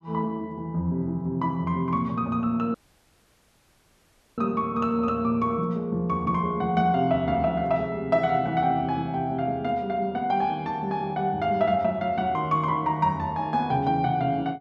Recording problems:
dropout; at 2.5 s for 1.5 s

